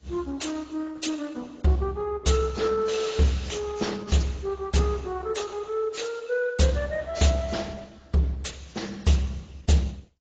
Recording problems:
lossy compression; Opus, then AAC, log-spectral distance 4 dB, nothing above 7.6 kHz

